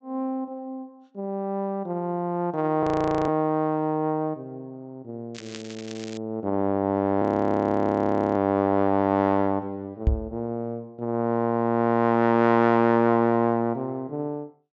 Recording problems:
low-pass filter; nothing above 8 kHz
audio freezing; at 3 s and at 7 s for 1 s
crackling; at 5.5 s; loose cable, SNR 19 dB
knock on the microphone; at 10 s; peak +6 dB vs average level

